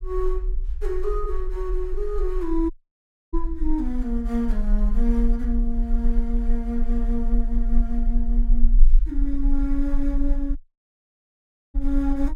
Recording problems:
low-frequency rumble; below 38 Hz, strongest tone 20 Hz, SNR -1 dB
audio cutting out; at 2.5 s for 0.5 s and at 11 s for 1 s

